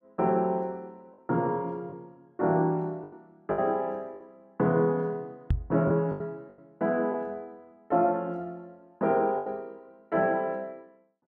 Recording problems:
lost packets; 5% of the sound replaced, filled with the last packet
microphone thump; at 5.5 s; peak +6 dB vs average level

